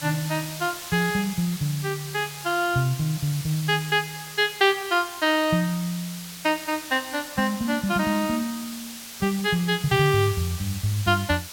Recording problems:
hiss; slope +2 dB per octave, SNR 12 dB

